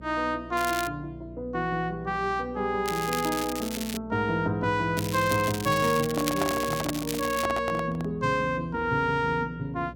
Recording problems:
hum; 60 Hz, harmonics up to 600 Hz, SNR 18 dB
crackling; at 0.5 s, from 3 to 4 s and from 5 to 7.5 s; loose cable, SNR 9 dB
microphone handling noise; from 6 to 8 s; peak +2 dB vs average level

